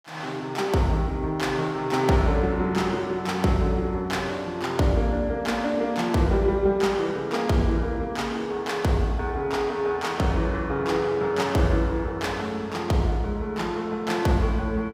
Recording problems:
none

